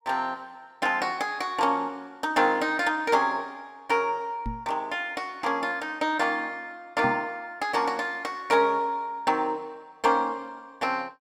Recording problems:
microphone bump; at 4.5 s and at 7 s; peak -2 dB vs average level

